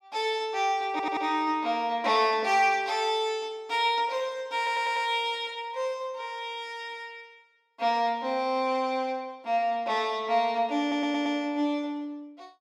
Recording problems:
audio stuttering; at 1 s, at 4.5 s and at 11 s

